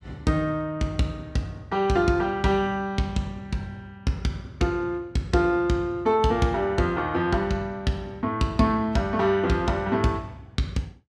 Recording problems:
none

